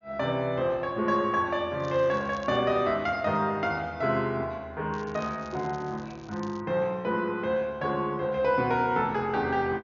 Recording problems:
treble cut off; nothing above 6.9 kHz
crackle; at 2 s and from 5 to 6.5 s; loose cable, SNR 25 dB

